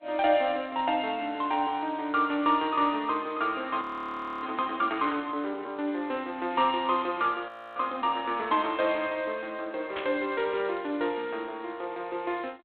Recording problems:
phone line; 240 Hz to 3.6 kHz, G.726
audio freezing; at 4 s for 0.5 s and at 7.5 s
burst of static; at 10 s; peak -4 dB vs average level

